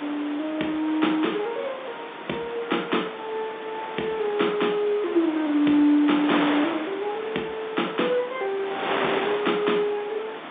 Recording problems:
telephone audio; 240 Hz to 3.7 kHz, G.711
wind noise; below 2.2 kHz, SNR 8 dB

